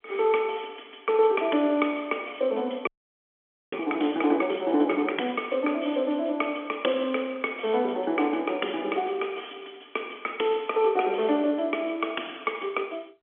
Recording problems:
telephone audio; 220 Hz to 3.4 kHz, G.711
audio freezing; at 3 s for 1 s

